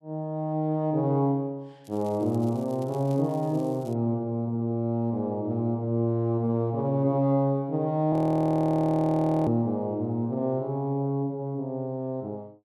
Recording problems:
crackling; from 2 to 4 s; loose cable, SNR 28 dB
audio freezing; at 8 s for 1.5 s

